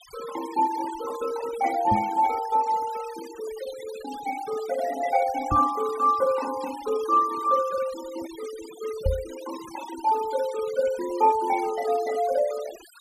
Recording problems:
denoising artefacts; signal-to-artefact ratio 17 dB
knock on the microphone; at 2 s, at 5.5 s and at 9 s; peak +3 dB vs average level

